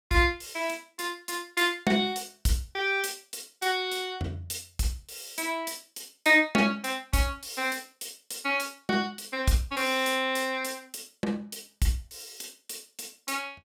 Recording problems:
none

